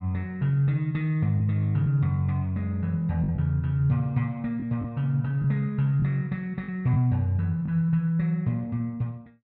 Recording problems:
packet loss; 3% of the sound replaced, filled with the last packet

